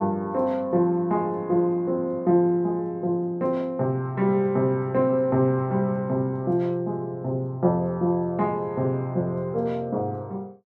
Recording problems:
none

